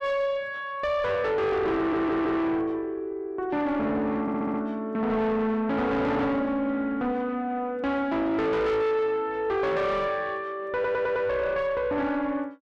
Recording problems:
distortion; soft clipping, signal-to-distortion ratio 6 dB
audio stuttering; at 2 s, at 4 s and at 11 s

